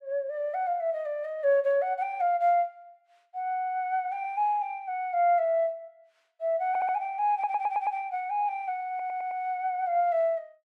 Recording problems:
audio stuttering; at 6.5 s, at 7.5 s and at 9 s

